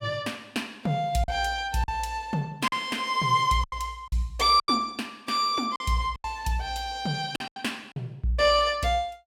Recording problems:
packet loss; 6% of the sound replaced, filled with silence

